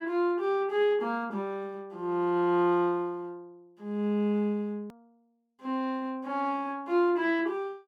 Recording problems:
hard cut with a click; at 5 s

